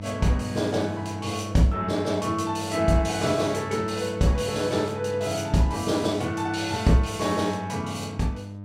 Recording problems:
hum; 50 Hz, harmonics up to 900 Hz, SNR 12 dB

